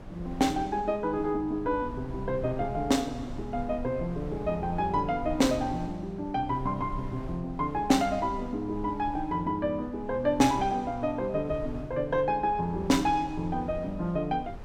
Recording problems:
wind on the microphone; below 170 Hz, SNR 14 dB

